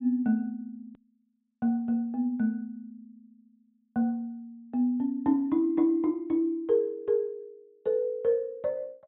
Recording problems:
treble cut off; nothing above 3.9 kHz
click at an edit; at 1 s

